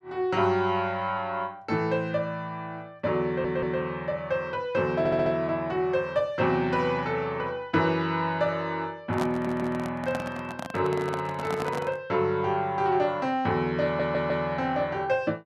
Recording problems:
stutter; 4 times, first at 3.5 s
handling noise; from 9 to 12 s; peak -1 dB vs average level

